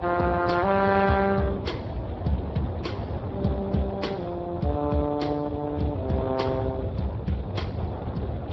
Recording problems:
lossy compression; Vorbis, then Speex, log-spectral distance 3 dB
low-frequency rumble; below 120 Hz, SNR 9 dB
wind on the microphone; below 770 Hz, SNR 9 dB

